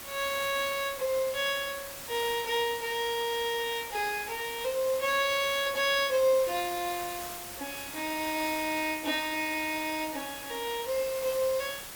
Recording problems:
hiss; slope -1 dB per octave, SNR 10 dB

